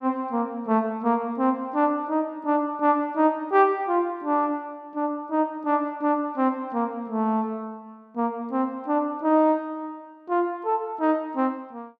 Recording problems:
none

